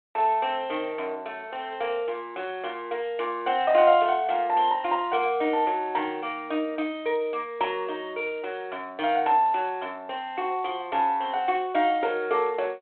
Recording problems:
phone line; 280 Hz to 3.6 kHz, G.726

